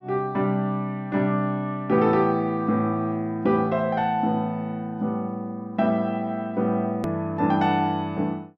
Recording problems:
hard cut with a click; at 7 s

